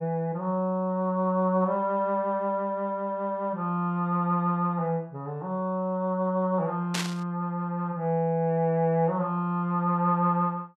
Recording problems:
burst of static; at 7 s; peak +1 dB vs average level

